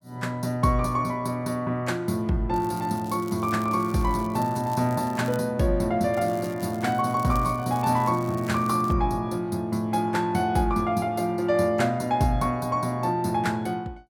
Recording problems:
crackle; from 2.5 to 5.5 s and from 6 to 9 s; loose cable, SNR 22 dB

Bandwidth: 18 kHz